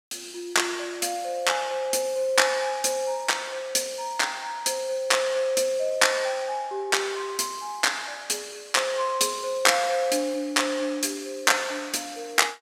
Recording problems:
none

